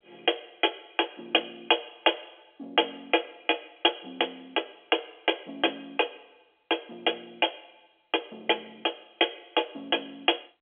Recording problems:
phone line; 280 Hz to 3.4 kHz, G.711

